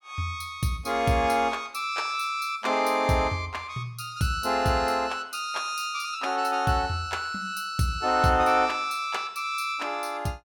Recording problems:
none

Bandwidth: 17.5 kHz